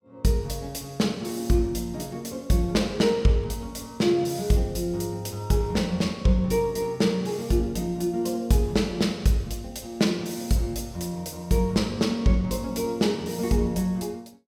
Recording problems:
none

